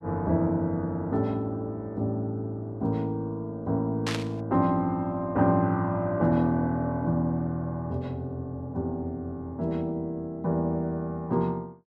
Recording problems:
static burst; at 4 s; peak 0 dB vs average level

